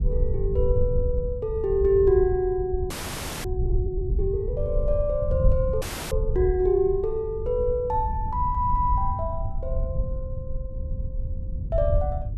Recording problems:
low-frequency rumble; below 80 Hz, SNR 4 dB
frozen audio; at 3 s for 0.5 s and at 6 s

